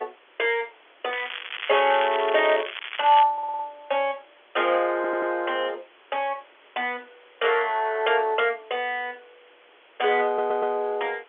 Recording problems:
phone line; 300 Hz to 3.4 kHz, G.711
background hiss; SNR 29 dB
crackling; from 1 to 3 s; loose cable, SNR 9 dB
audio stuttering; at 3.5 s, at 5 s and at 10 s

